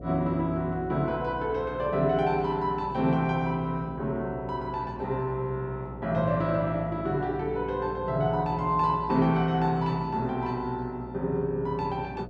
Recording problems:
hum; 60 Hz, harmonics up to 720 Hz, SNR 14 dB

